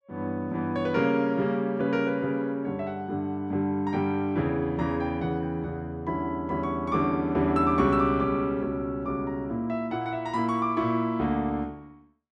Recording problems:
none

